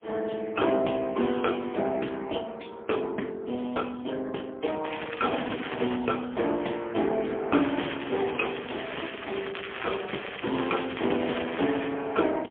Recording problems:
phone line; 220 Hz to 3.3 kHz, AMR-NB, then MP3
crackle; from 5 to 6 s and from 7.5 to 12 s; loose cable, SNR 8 dB

